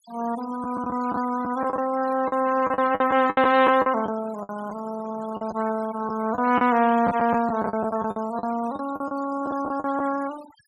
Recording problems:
denoising artefacts; signal-to-artefact ratio 17 dB
lost packets; 11% of the sound replaced, filled with the last packet

